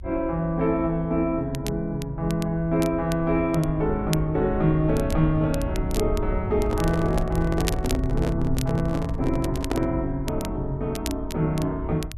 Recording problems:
rumble; below 90 Hz, SNR 8 dB
crackling; vinyl, SNR 15 dB
microphone handling noise; from 6.5 to 10 s; peak +1 dB vs average level

